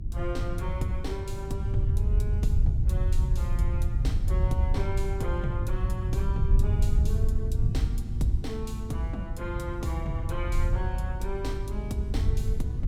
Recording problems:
hum; 50 Hz, harmonics up to 350 Hz, SNR 6 dB
wind on the microphone; below 88 Hz, SNR -6 dB

